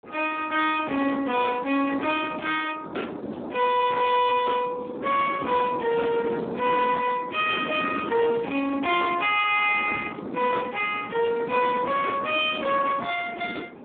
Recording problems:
telephone audio; 190 Hz to 3.6 kHz, Speex
distortion; soft clipping, signal-to-distortion ratio 12 dB
wind noise; below 690 Hz, SNR 11 dB

